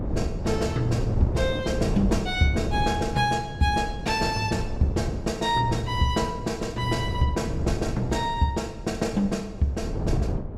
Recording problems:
wind noise; below 230 Hz, SNR 5 dB

